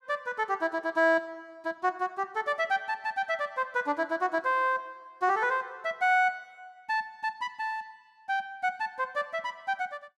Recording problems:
none

